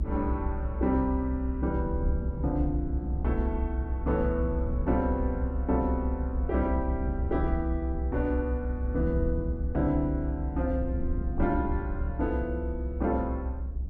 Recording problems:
rumble; below 68 Hz, strongest tone 66 Hz, SNR 1 dB

